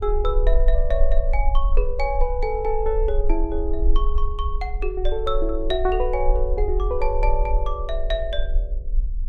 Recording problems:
rumble; below 40 Hz, strongest tone 22 Hz, SNR 0 dB

